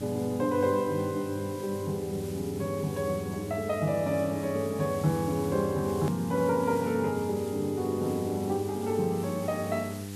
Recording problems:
hum; 50 Hz, harmonics up to 800 Hz, SNR 10 dB
hiss; slope +1 dB per octave, SNR 17 dB
edit click; at 6 s

